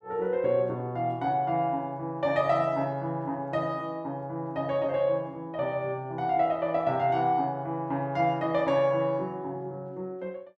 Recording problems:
none

